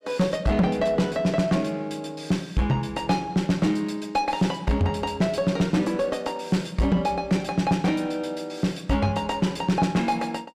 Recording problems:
distorted audio; soft clipping, signal-to-distortion ratio 10 dB

